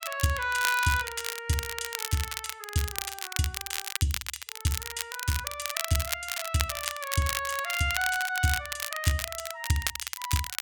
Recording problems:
crackle; vinyl, SNR 3 dB

